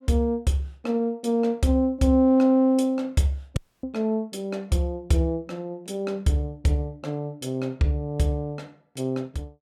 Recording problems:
dropout; at 3.5 s

